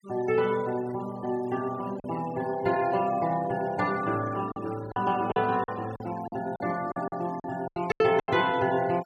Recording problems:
denoising artefacts; signal-to-artefact ratio 19 dB
packet loss; 8% of the sound replaced, filled with silence

